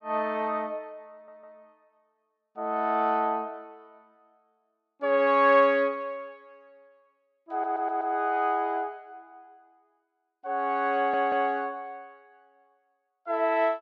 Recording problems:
stutter; at 1 s, at 7.5 s and at 11 s

